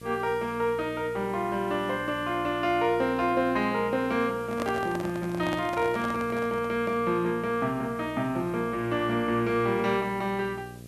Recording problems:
electrical hum; 60 Hz, harmonics up to 720 Hz, SNR 16 dB
hiss; SNR 27 dB
microphone handling noise; from 4.5 to 7 s; peak -2 dB vs average level

